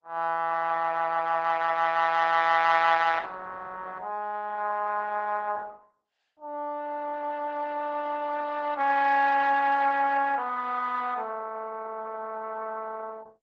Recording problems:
codec artefacts; Opus, log-spectral distance 3 dB

